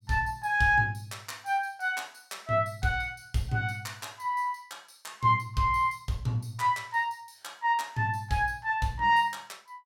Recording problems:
none

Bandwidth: 17 kHz